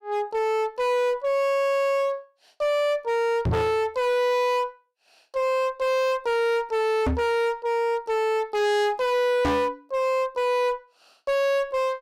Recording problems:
distortion; hard clipping, signal-to-distortion ratio 5 dB
knock on the microphone; at 3.5 s, at 7 s and at 9.5 s; peak +5 dB vs average level

